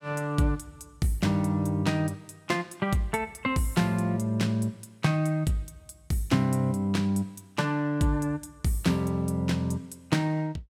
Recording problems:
none

